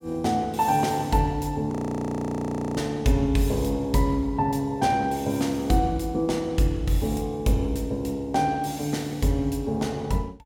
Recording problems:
audio freezing; at 1.5 s for 1 s

